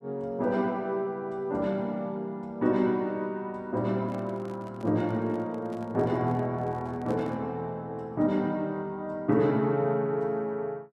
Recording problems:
microphone handling noise; from 4 to 7.5 s; peak -10 dB vs average level

